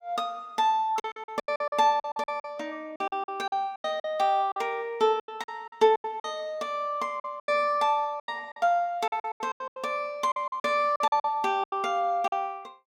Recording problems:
packet loss; 15% of the sound replaced, filled with silence

